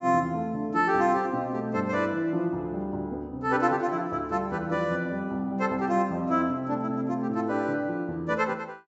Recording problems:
treble missing; nothing above 8 kHz

